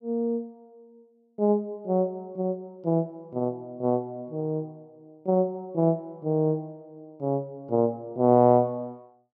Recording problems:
none

